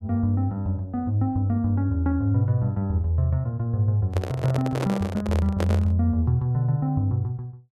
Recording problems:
handling noise; from 4 to 6 s; peak -1 dB vs average level

